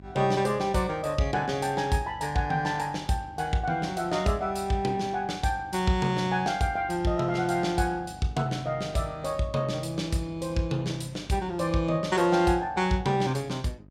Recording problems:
electrical hum; 50 Hz, harmonics up to 700 Hz, SNR 22 dB

